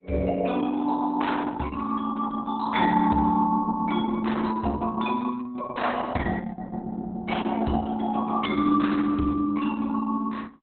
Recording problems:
lossy compression; Opus, log-spectral distance 4 dB, nothing above 3.7 kHz

